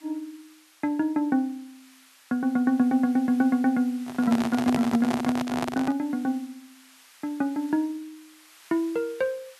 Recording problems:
background hiss; SNR 25 dB
handling noise; from 4 to 6 s; peak +1 dB vs average level

